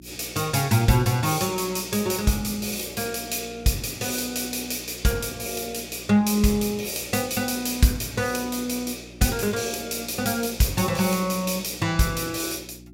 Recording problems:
hum; 60 Hz, harmonics up to 360 Hz, SNR 21 dB

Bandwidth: 16 kHz